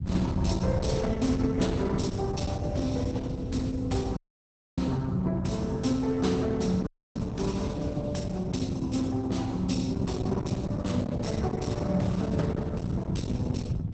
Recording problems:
lossy compression; Opus, log-spectral distance 3 dB, nothing above 8 kHz
distortion; hard clipping, uneven, signal-to-distortion ratio 11 dB
rumble; below 170 Hz, SNR 1 dB
dropout; at 4 s for 0.5 s and at 7 s

